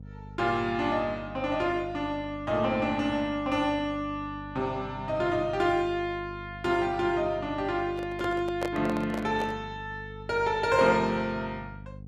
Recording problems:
hum; 50 Hz, harmonics up to 500 Hz, SNR 15 dB
handling noise; from 8 to 9.5 s; peak 0 dB vs average level

